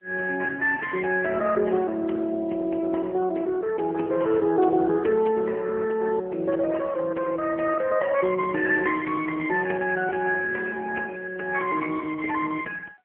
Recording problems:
telephone audio; 240 Hz to 3.1 kHz, AMR-NB

